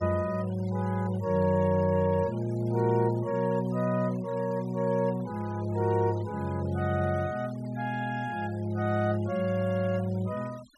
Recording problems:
denoising artefacts; signal-to-artefact ratio 22 dB

